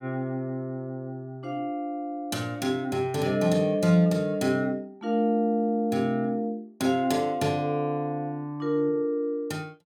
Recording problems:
none

